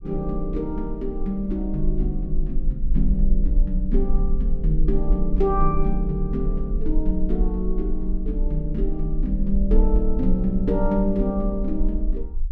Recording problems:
rumble; below 40 Hz, SNR 1 dB

